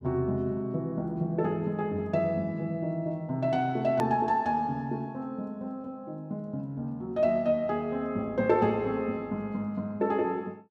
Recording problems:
edit click; at 4 s

